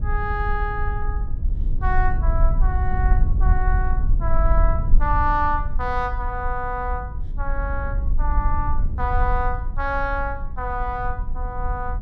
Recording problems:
rumble; below 54 Hz, SNR -2 dB

